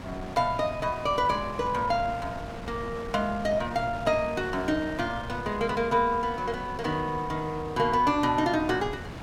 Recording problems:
wind on the microphone; below 890 Hz, SNR 12 dB

